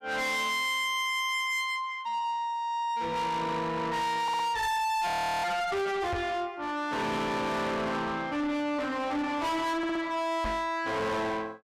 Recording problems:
distortion; soft clipping, signal-to-distortion ratio 7 dB
stutter; at 4 s and at 10 s
frozen audio; at 5 s
microphone bump; at 6 s and at 10 s; peak +1 dB vs average level

